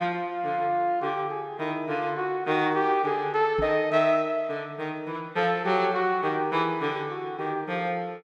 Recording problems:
knock on the microphone; at 3.5 s; peak -4 dB vs average level

